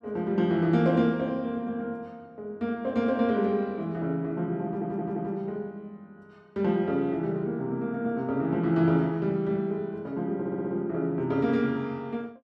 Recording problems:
audio stuttering; at 4.5 s and at 10 s

